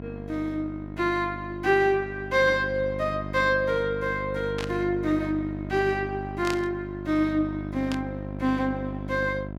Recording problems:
hum; 50 Hz, harmonics up to 1.1 kHz, SNR 9 dB
static burst; at 4.5 s, at 6.5 s and at 8 s; peak -3 dB vs average level

